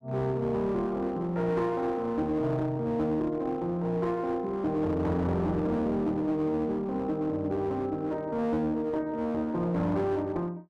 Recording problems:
distorted audio; hard clipping, uneven, signal-to-distortion ratio 9 dB

